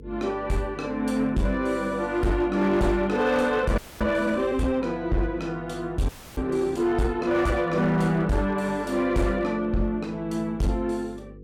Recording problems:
distortion; hard clipping, signal-to-distortion ratio 12 dB
electrical hum; 50 Hz, harmonics up to 500 Hz, SNR 19 dB
audio freezing; at 4 s and at 6 s

